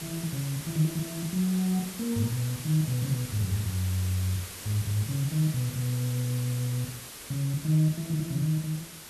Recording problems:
background hiss; slope -1 dB per octave, SNR 10 dB

